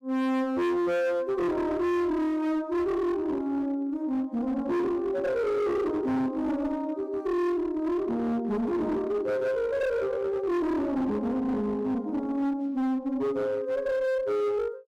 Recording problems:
distortion; hard clipping, uneven, signal-to-distortion ratio 8 dB

